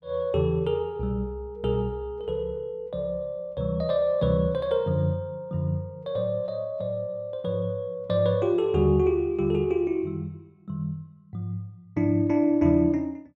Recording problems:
none

